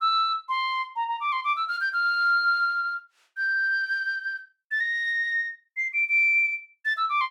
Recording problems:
none

